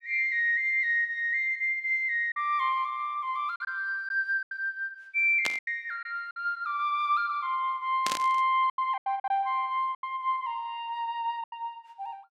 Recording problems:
lost packets; 6% of the sound replaced, filled with silence
burst of static; at 5.5 s and at 8 s; peak +2 dB vs average level

